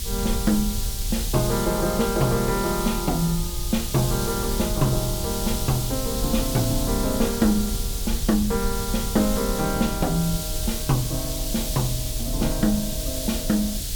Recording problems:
background hiss; SNR 5 dB
rumble; below 66 Hz, strongest tone 38 Hz, SNR 7 dB
wind on the microphone; below 370 Hz, SNR 19 dB

